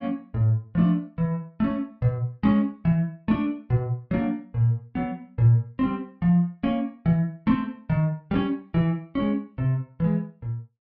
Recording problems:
low-pass filter; nothing above 5.7 kHz

